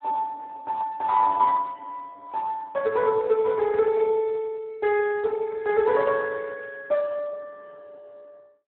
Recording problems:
phone line; 300 Hz to 2.2 kHz, Speex

